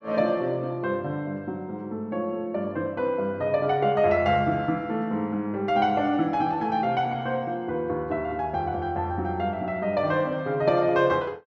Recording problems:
none

